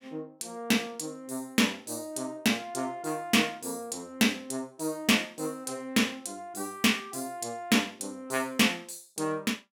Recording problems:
none

